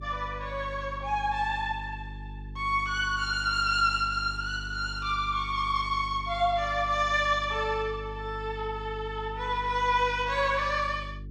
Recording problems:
hum; 50 Hz, harmonics up to 450 Hz, SNR 13 dB

